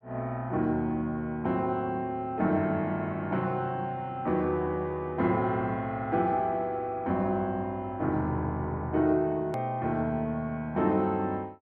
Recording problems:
edit click; at 9.5 s

